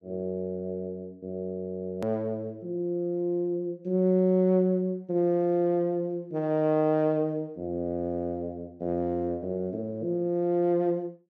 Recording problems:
hard cut with a click; at 2 s

